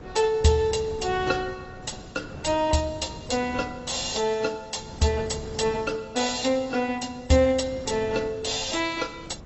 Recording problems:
lossy codec; AAC, log-spectral distance 7 dB, nothing above 8 kHz
wind noise; below 440 Hz, SNR 17 dB

